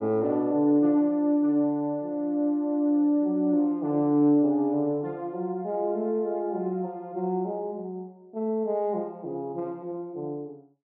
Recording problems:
none

